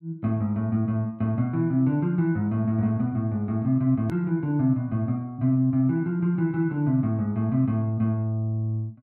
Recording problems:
edit click; at 4 s

